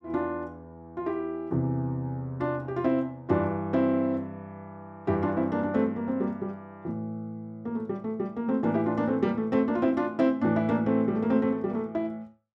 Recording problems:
none

